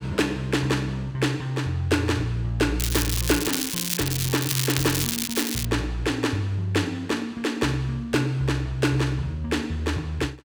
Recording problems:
crackle; from 3 to 5.5 s; loose cable, SNR 1 dB

